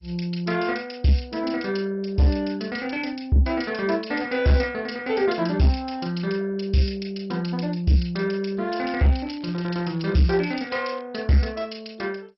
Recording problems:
lossy codec; MP2, log-spectral distance 6 dB, nothing above 5.5 kHz
distortion; soft clipping, signal-to-distortion ratio 10 dB
crackling; from 8.5 to 11 s; loose cable, SNR 24 dB

